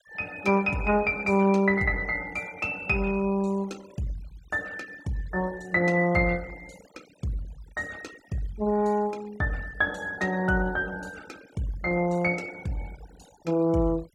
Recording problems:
noise reduction artefacts; signal-to-artefact ratio 23 dB

